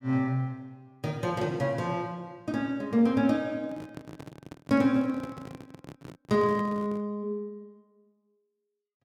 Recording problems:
handling noise; from 3.5 to 7 s; peak -8 dB vs average level

